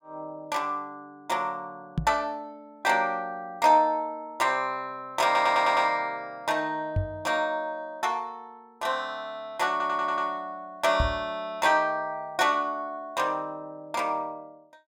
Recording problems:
knock on the microphone; at 2 s, at 7 s and at 11 s; peak +3 dB vs average level
audio stuttering; at 5.5 s and at 9.5 s

